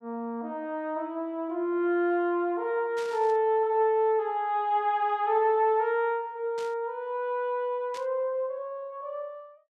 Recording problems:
burst of static; at 3 s, at 6.5 s and at 8 s; peak -12 dB vs average level

